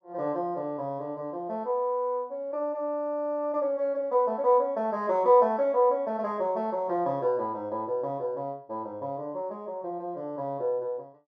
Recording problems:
none

